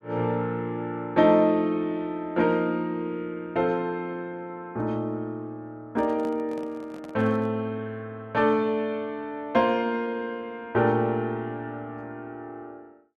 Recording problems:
handling noise; from 6 to 7.5 s; peak -11 dB vs average level

